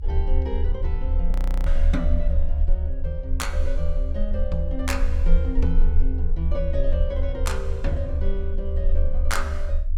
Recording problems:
rumble; below 68 Hz, strongest tone 20 Hz, SNR -6 dB
frozen audio; at 1.5 s

